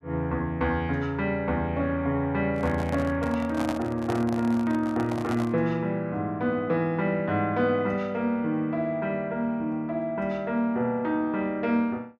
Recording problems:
handling noise; from 2.5 to 5.5 s; peak -2 dB vs average level

